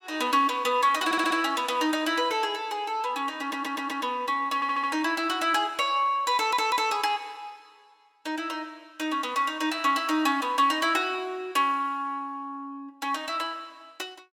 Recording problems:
audio stuttering; 4 times, first at 1 s

